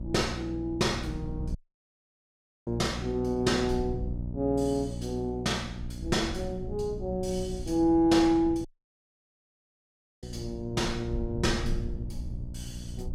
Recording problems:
mains hum; 60 Hz, harmonics up to 660 Hz, SNR 11 dB
low-frequency rumble; below 86 Hz, SNR 12 dB
audio cutting out; at 1.5 s for 1 s and at 8.5 s for 1.5 s

